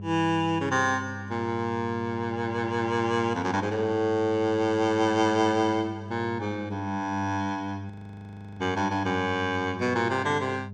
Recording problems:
hum; 50 Hz, harmonics up to 600 Hz, SNR 13 dB
audio freezing; at 8 s for 0.5 s

